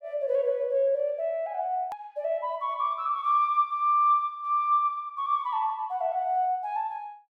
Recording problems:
hard cut with a click; at 2 s

